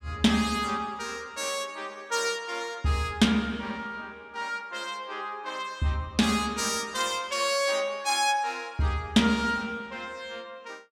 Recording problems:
none

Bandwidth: 17 kHz